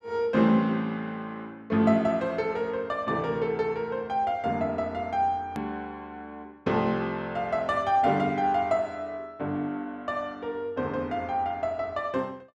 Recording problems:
edit click; at 5.5 s

